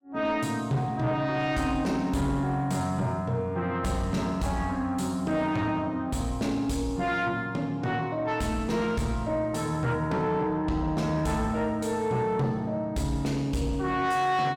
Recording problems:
distortion; soft clipping, signal-to-distortion ratio 11 dB

